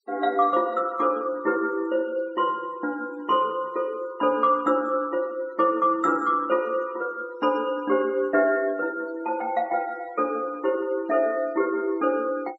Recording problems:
denoising artefacts; signal-to-artefact ratio 27 dB

